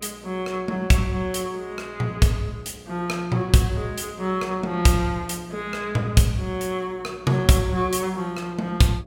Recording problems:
electrical hum; 60 Hz, harmonics up to 720 Hz, SNR 24 dB

